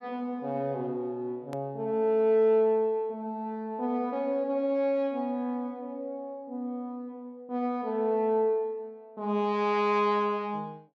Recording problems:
click at an edit; at 1.5 s

